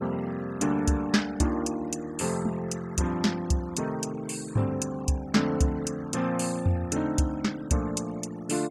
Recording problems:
noise reduction artefacts; signal-to-artefact ratio 19 dB

